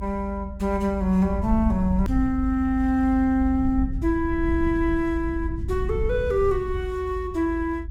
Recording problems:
low-frequency rumble; below 76 Hz, SNR 7 dB
hard cut with a click; at 2 s

